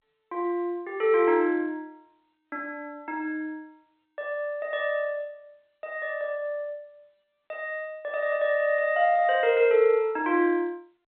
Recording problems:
phone line; 240 Hz to 3.6 kHz, G.711

